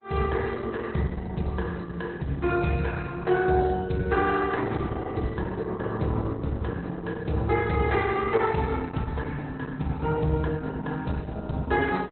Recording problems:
codec artefacts; Opus, log-spectral distance 4 dB, nothing above 4.1 kHz

